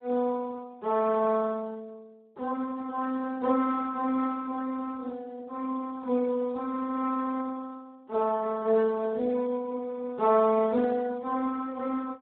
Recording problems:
telephone audio; 240 Hz to 2.1 kHz, Speex

